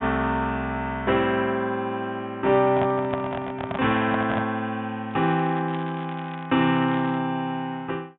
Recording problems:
treble cut off; nothing above 3.7 kHz
handling noise; from 2.5 to 4.5 s; peak -1 dB vs average level
crackle; from 5 to 7 s; loose cable, SNR 20 dB

